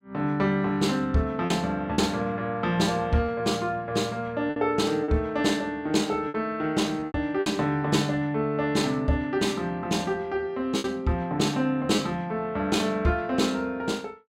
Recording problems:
lost packets; 4% of the sound replaced, filled with repeated pitch periods

